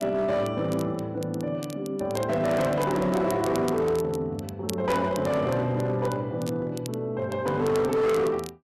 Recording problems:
distortion; hard clipping, signal-to-distortion ratio 11 dB
crackle; vinyl, SNR 18 dB

